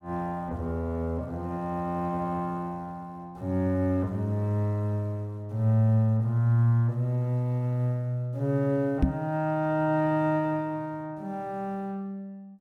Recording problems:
microphone bump; at 9 s; peak +8 dB vs average level

